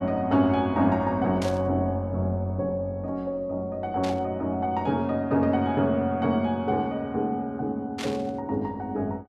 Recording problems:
static burst; at 1.5 s, at 4 s and at 8 s; peak -5 dB vs average level

